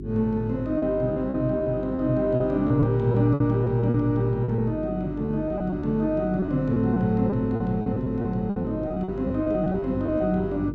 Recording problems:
hum; 50 Hz, harmonics up to 400 Hz, SNR 11 dB
packet loss; 10% of the sound replaced, filled with repeated pitch periods

